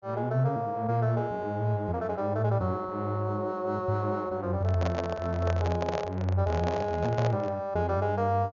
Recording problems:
low-pass filter; nothing above 7 kHz
handling noise; from 4.5 to 7.5 s; peak +1 dB vs average level

